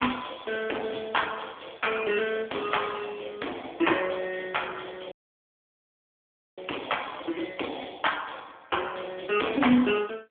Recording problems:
telephone audio; 220 Hz to 3.4 kHz, AMR-NB
distorted audio; hard clipping, signal-to-distortion ratio 12 dB
dropout; at 5 s for 1.5 s

